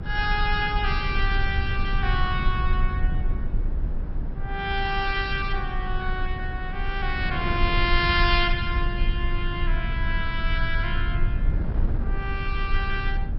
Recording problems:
lossy codec; MP2, log-spectral distance 2 dB, nothing above 5.5 kHz
rumble; below 60 Hz, strongest tone 26 Hz, SNR 2 dB
wind noise; below 310 Hz, SNR 11 dB

